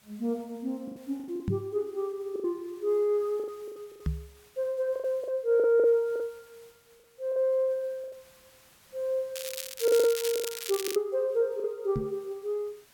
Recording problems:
hiss; slope -1 dB per octave, SNR 29 dB
lost packets; 11% of the sound replaced, filled with the last packet
knock on the microphone; at 1.5 s, at 4 s and at 12 s; peak +2 dB vs average level
crackling; from 9.5 to 11 s; loose cable, SNR 7 dB

